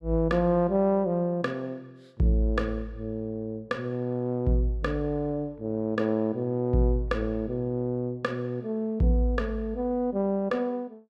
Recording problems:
none

